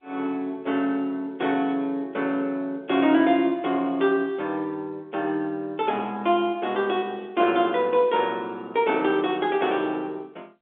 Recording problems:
phone line; 220 Hz to 3.7 kHz, G.711

